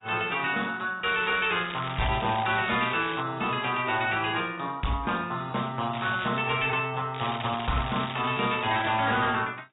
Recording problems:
treble missing; nothing above 3.8 kHz
codec artefacts; AAC, log-spectral distance 8 dB
distorted audio; hard clipping, uneven, signal-to-distortion ratio 9 dB
crackle; from 1 to 3 s, at 6 s and from 7 to 9 s; loose cable, SNR 11 dB

